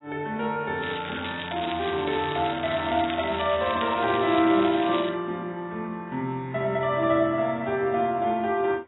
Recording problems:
lossy codec; AAC, log-spectral distance 9 dB, nothing above 3.2 kHz
crackle; from 1 to 5 s; loose cable, SNR 11 dB

